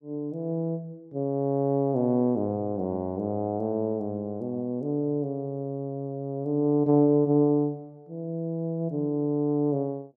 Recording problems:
none

